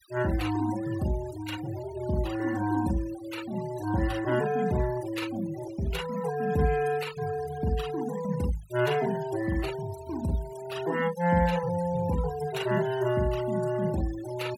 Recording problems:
noise reduction artefacts; signal-to-artefact ratio 15 dB

